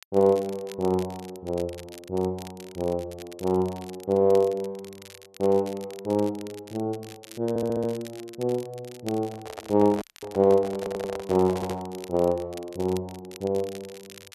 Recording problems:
crackling; vinyl, SNR 20 dB
audio stuttering; at 7.5 s, at 11 s and at 12 s
microphone handling noise; from 9.5 to 12 s; peak -5 dB vs average level
audio cutting out; at 10 s

